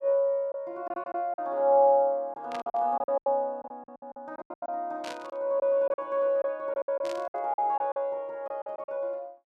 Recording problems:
packet loss; 13% of the sound replaced, filled with silence
static burst; at 2.5 s, at 5 s and at 7 s; peak -9 dB vs average level

